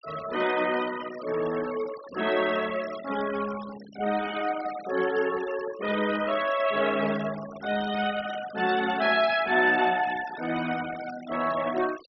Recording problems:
treble missing; nothing above 5.8 kHz
noise reduction artefacts; signal-to-artefact ratio 15 dB

